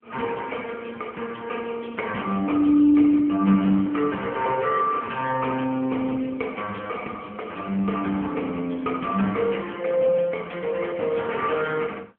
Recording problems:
telephone audio; 170 Hz to 3.3 kHz, AMR-NB

